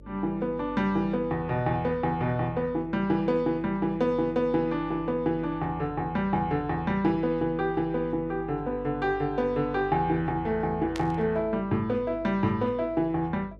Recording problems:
electrical hum; 50 Hz, harmonics up to 600 Hz, SNR 20 dB
burst of static; at 11 s; peak -6 dB vs average level

